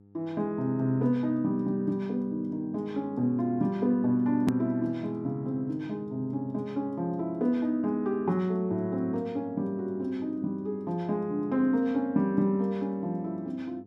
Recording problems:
electrical hum; 50 Hz, harmonics up to 800 Hz, SNR 25 dB
click at an edit; at 4.5 s

